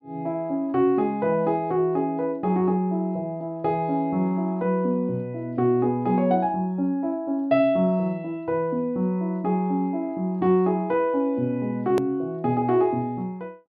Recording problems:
treble cut off; nothing above 5.1 kHz
edit click; at 12 s

